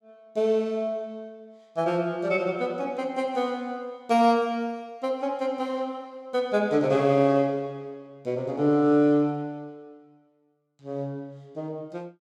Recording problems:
none

